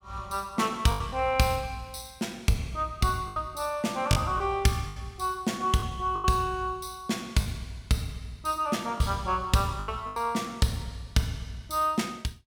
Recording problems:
lost packets; 5% of the sound replaced, filled with the last packet

